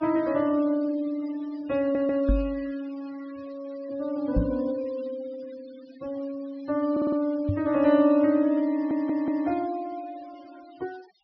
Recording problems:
low-pass filter; nothing above 5.5 kHz
denoising artefacts; signal-to-artefact ratio 24 dB
stutter; at 2 s, at 7 s and at 8.5 s
knock on the microphone; at 2.5 s, at 4.5 s and at 7.5 s; peak +4 dB vs average level

